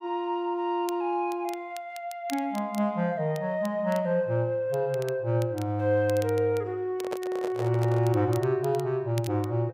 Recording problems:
crackle; vinyl, SNR 21 dB
microphone handling noise; from 7 to 8 s; peak -2 dB vs average level

